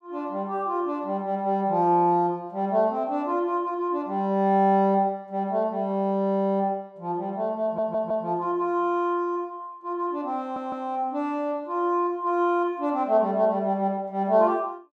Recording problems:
stutter; at 7.5 s and at 10 s

